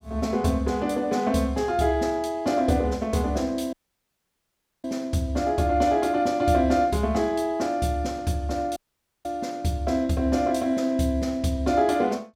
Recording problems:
dropout; at 3.5 s for 1 s and at 9 s

